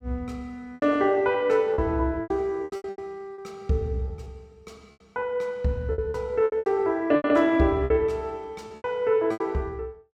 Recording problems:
packet loss; 13% of the sound replaced, filled with repeated pitch periods

